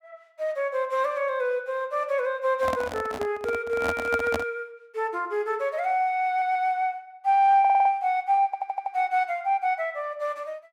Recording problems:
microphone handling noise; from 2.5 to 4.5 s; peak +1 dB vs average level
audio stuttering; at 6.5 s, at 7.5 s and at 8.5 s

